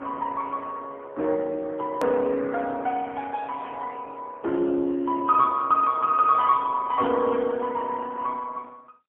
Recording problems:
telephone audio; 280 Hz to 3.4 kHz, AMR-NB, then MP3
click at an edit; at 2 s

